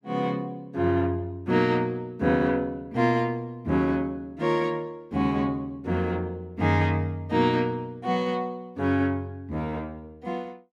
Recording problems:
none

